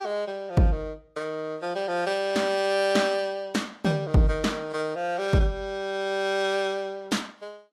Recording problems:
lossy codec; Vorbis, log-spectral distance 2 dB, nothing above 11.6 kHz

